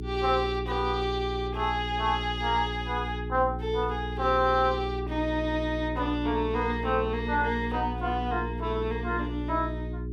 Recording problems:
hum; 60 Hz, harmonics up to 420 Hz, SNR 7 dB

